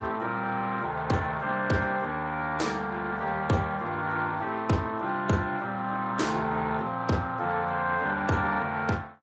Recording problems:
lossy compression; Speex, log-spectral distance 3 dB, nothing above 7.6 kHz

